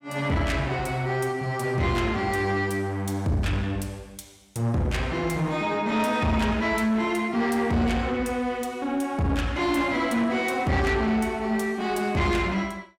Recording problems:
distorted audio; soft clipping, signal-to-distortion ratio 10 dB

